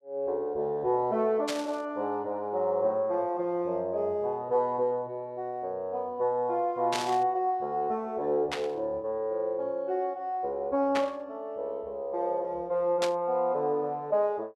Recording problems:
burst of static; 5 times, first at 1.5 s; peak +1 dB vs average level

